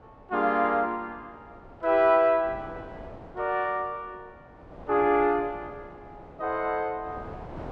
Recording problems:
wind noise; below 760 Hz, SNR 21 dB

